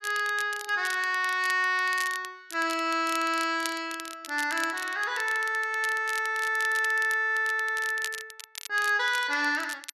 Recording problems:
crackling; vinyl, SNR 14 dB

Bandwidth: 12.5 kHz